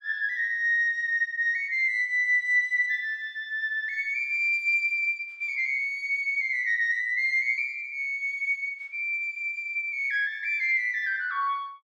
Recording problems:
none

